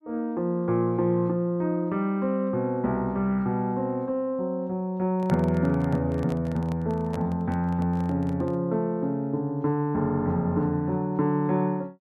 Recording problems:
microphone handling noise; from 5 to 8.5 s; peak -4 dB vs average level

